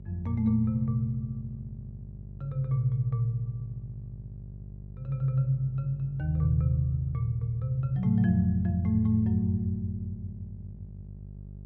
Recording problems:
hum; 50 Hz, harmonics up to 450 Hz, SNR 16 dB

